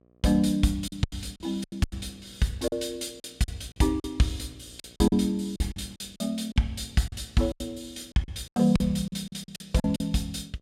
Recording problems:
hum; 60 Hz, harmonics up to 1.3 kHz, SNR 29 dB
lost packets; 12% of the sound replaced, filled with silence

